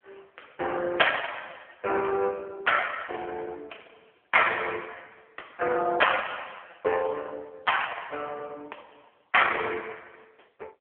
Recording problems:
telephone audio; 340 Hz to 3.3 kHz, AMR-NB

